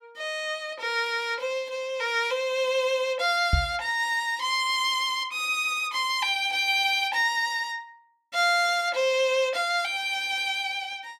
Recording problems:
microphone thump; at 3.5 s; peak +5 dB vs average level

